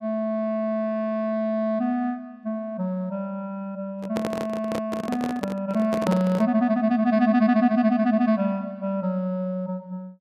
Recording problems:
microphone handling noise; from 4 to 6.5 s; peak +1 dB vs average level

